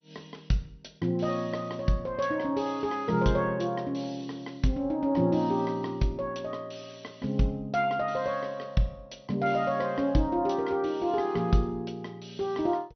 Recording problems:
lossy codec; MP2, log-spectral distance 3 dB, nothing above 6 kHz

